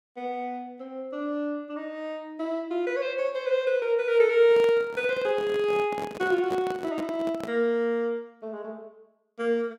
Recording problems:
handling noise; from 4.5 to 7.5 s; peak -5 dB vs average level

